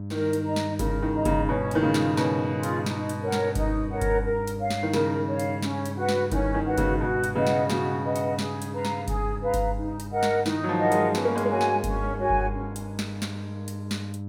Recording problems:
hum; 50 Hz, harmonics up to 700 Hz, SNR 9 dB

